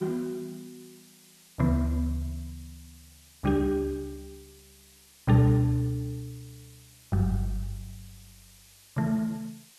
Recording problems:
background hiss; SNR 25 dB

